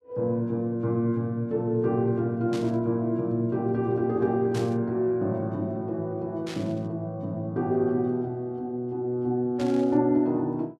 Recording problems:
static burst; 4 times, first at 2.5 s; peak -9 dB vs average level

